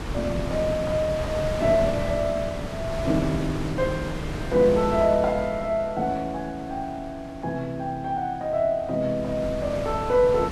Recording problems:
wind noise; below 670 Hz, SNR 8 dB

